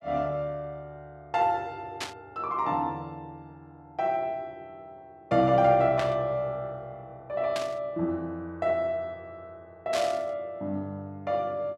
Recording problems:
static burst; 4 times, first at 2 s; peak -1 dB vs average level

